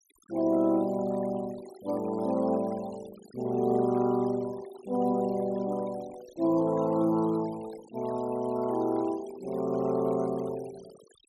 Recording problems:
denoising artefacts; signal-to-artefact ratio 22 dB

